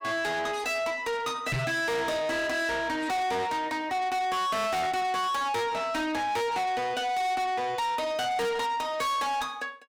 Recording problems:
distortion; soft clipping, signal-to-distortion ratio 6 dB
knock on the microphone; at 1.5 s; peak +3 dB vs average level

